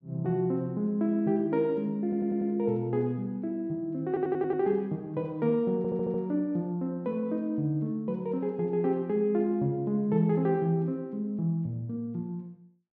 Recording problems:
audio stuttering; at 2 s, at 4 s and at 6 s

